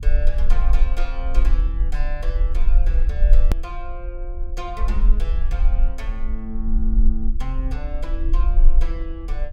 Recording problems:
rumble; below 42 Hz, strongest tone 18 Hz, SNR -12 dB
edit click; at 3.5 s

